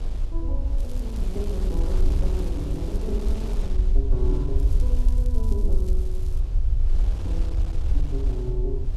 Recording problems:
low-frequency rumble; below 54 Hz, SNR -9 dB
wind on the microphone; below 640 Hz, SNR 6 dB
crackling; from 1 to 3.5 s and from 4.5 to 6.5 s; loose cable, SNR 17 dB

